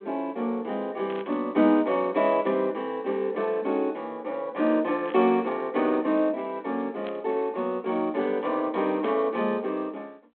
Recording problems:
telephone audio; 240 Hz to 3.7 kHz, G.726
burst of static; 4 times, first at 1 s; peak -13 dB vs average level

